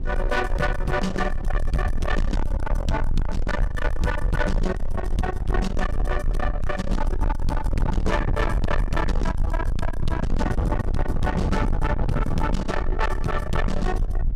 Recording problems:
distorted audio; soft clipping, signal-to-distortion ratio 7 dB
rumble; below 70 Hz, SNR 1 dB
wind on the microphone; below 230 Hz, SNR 5 dB

